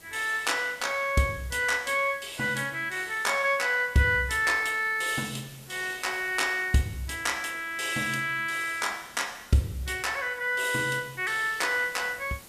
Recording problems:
hiss; slope -2 dB per octave, SNR 22 dB

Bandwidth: 14.5 kHz